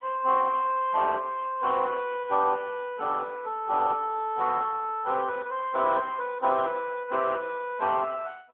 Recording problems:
phone line; 340 Hz to 3.4 kHz, AMR-NB

